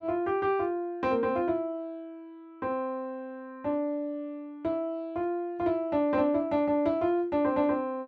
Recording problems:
none

